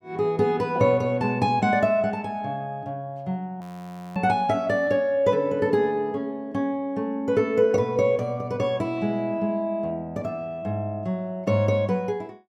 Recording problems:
frozen audio; at 3.5 s for 0.5 s

